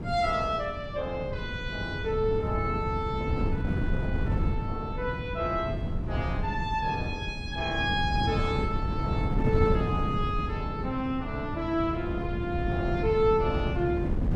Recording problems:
wind on the microphone; below 200 Hz, SNR 1 dB

